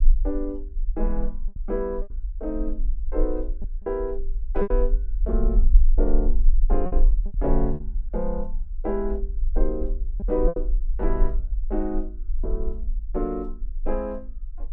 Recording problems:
low-frequency rumble; below 40 Hz, strongest tone 24 Hz, SNR -2 dB
packet loss; 4% of the sound replaced, filled with repeated pitch periods

